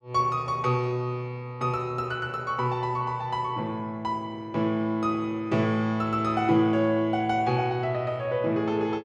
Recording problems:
none

